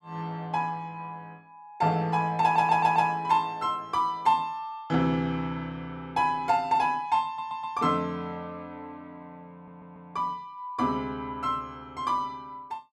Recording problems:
audio stuttering; at 2.5 s, at 7.5 s and at 9.5 s

